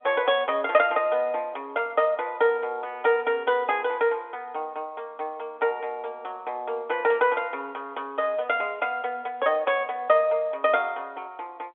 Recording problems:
phone line; 300 Hz to 3.6 kHz, G.711

